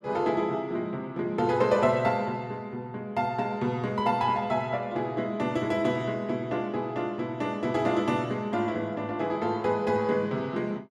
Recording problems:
none

